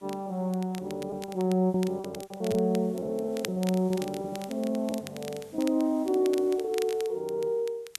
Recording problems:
background hiss; slope -2 dB per octave, SNR 28 dB
crackling; vinyl, SNR 16 dB
lost packets; 8% of the sound replaced, filled with repeated pitch periods

